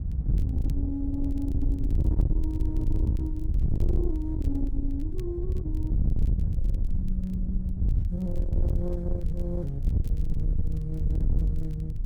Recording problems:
distorted audio; soft clipping, signal-to-distortion ratio 7 dB
rumble; below 72 Hz, SNR 9 dB
wind noise; below 84 Hz, SNR -6 dB
crackle; vinyl, SNR 27 dB

